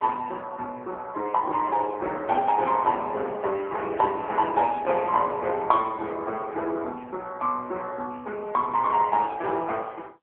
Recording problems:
phone line; 280 Hz to 3.4 kHz, AMR-NB

